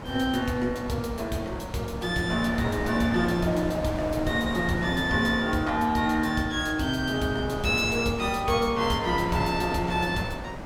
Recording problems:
wind on the microphone; below 880 Hz, SNR 9 dB

